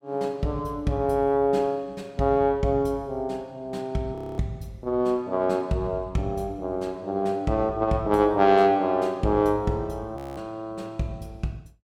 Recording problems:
frozen audio; at 4 s and at 10 s

